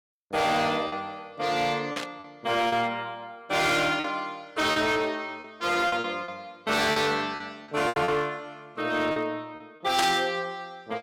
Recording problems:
distortion; hard clipping, signal-to-distortion ratio 11 dB
packet loss; 7% of the sound replaced, filled with repeated pitch periods
static burst; at 2 s and at 10 s; peak +3 dB vs average level

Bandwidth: 17 kHz